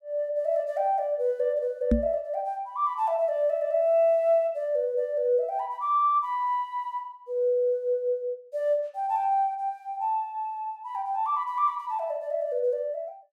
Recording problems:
knock on the microphone; at 2 s; peak +7 dB vs average level

